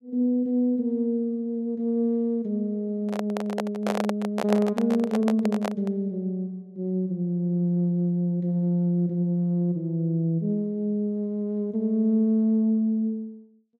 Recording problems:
microphone handling noise; from 3 to 6 s; peak +1 dB vs average level

